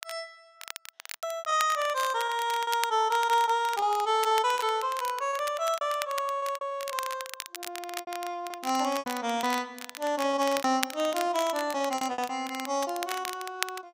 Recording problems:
crackling; vinyl, SNR 11 dB
packet loss; 11% of the sound replaced, filled with repeated pitch periods

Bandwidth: 15.5 kHz